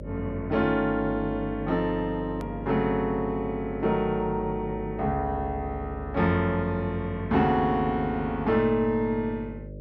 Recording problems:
hum; 50 Hz, harmonics up to 600 Hz, SNR 12 dB
edit click; at 2.5 s

